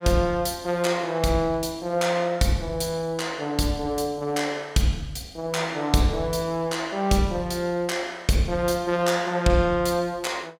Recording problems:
none

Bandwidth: 16.5 kHz